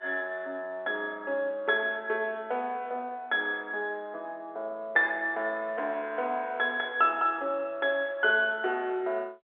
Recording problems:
phone line; 320 Hz to 3.6 kHz, G.711

